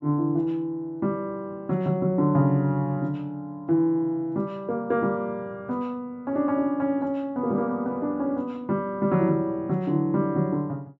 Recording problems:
low-pass filter; nothing above 8 kHz

